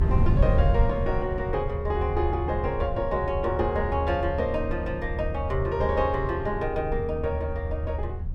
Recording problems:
rumble; below 78 Hz, strongest tone 76 Hz, SNR 5 dB
wind noise; below 120 Hz, SNR 4 dB

